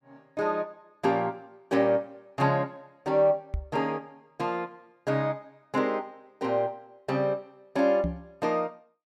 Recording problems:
microphone thump; at 3.5 s and at 8 s; peak +1 dB vs average level

